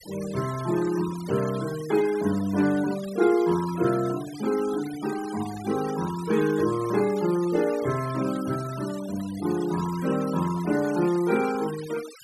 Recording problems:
denoising artefacts; signal-to-artefact ratio 16 dB

